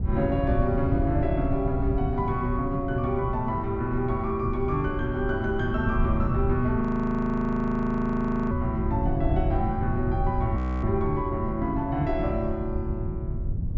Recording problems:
treble cut off; nothing above 8 kHz
wind noise; below 120 Hz, SNR 3 dB
frozen audio; at 7 s for 1.5 s and at 11 s

